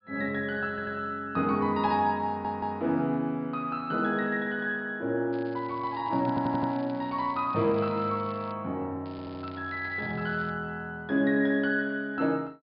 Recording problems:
treble cut off; nothing above 5 kHz
audio stuttering; 4 times, first at 0.5 s
crackle; from 5.5 to 8.5 s and from 9 to 11 s; loose cable, SNR 25 dB

